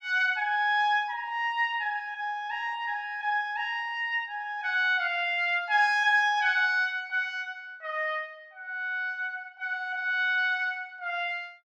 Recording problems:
none

